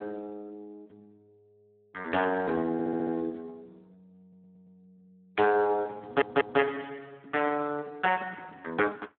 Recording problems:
phone line; 220 Hz to 2.9 kHz, Speex
stutter; at 2.5 s, at 4 s and at 6 s

